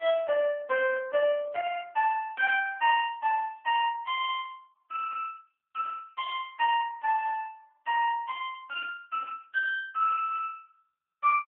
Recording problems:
phone line; 300 Hz to 2.6 kHz, AMR-NB

